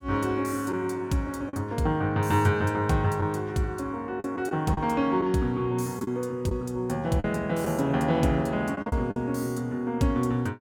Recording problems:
lost packets; 4% of the sound replaced, filled with the last packet

